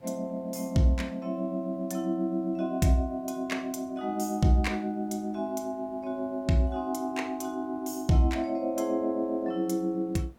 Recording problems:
background hiss; slope -8 dB per octave, SNR 28 dB

